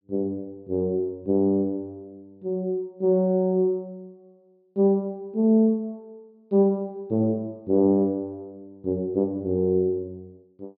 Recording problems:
low-pass filter; nothing above 5.3 kHz

